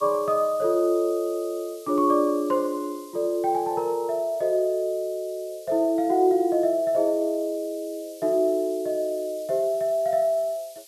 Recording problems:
hiss; SNR 23 dB

